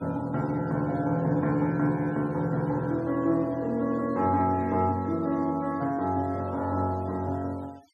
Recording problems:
denoising artefacts; signal-to-artefact ratio 26 dB

